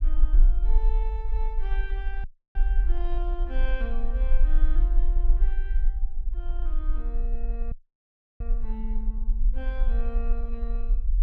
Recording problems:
rumble; below 40 Hz, strongest tone 20 Hz, SNR -13 dB
audio cutting out; at 2 s and at 7.5 s for 0.5 s

